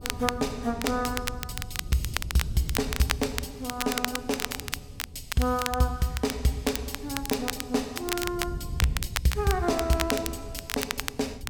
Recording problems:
wind on the microphone; below 120 Hz, SNR 12 dB
crackle; vinyl, SNR 4 dB

